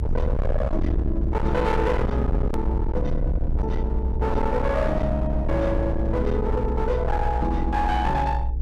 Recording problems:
distorted audio; hard clipping, signal-to-distortion ratio 7 dB
electrical hum; 60 Hz, harmonics up to 480 Hz, SNR 22 dB
low-frequency rumble; below 74 Hz, SNR 1 dB
edit click; at 2.5 s

